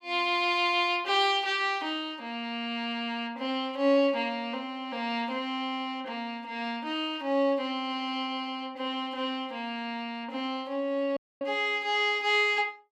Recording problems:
dropout; at 11 s

